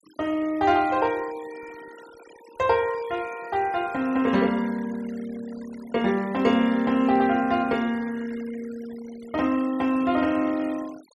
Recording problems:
denoising artefacts; signal-to-artefact ratio 21 dB

